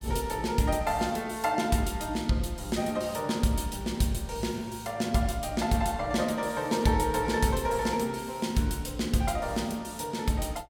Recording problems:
none

